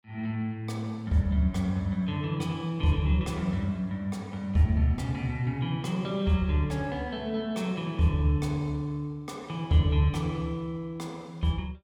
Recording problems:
none

